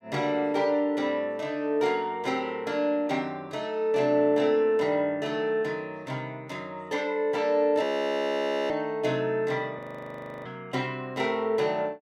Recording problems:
frozen audio; at 8 s for 1 s and at 10 s for 0.5 s

